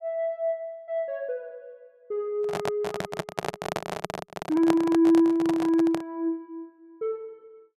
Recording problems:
microphone handling noise; from 2.5 to 6 s; peak +2 dB vs average level

